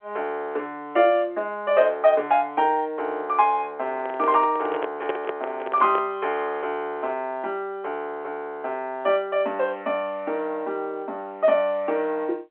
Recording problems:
phone line; 320 Hz to 3.3 kHz, G.711
handling noise; from 4 to 6 s; peak 0 dB vs average level

